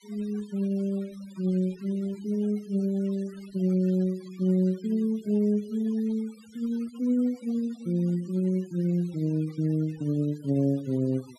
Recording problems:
noise reduction artefacts; signal-to-artefact ratio 25 dB

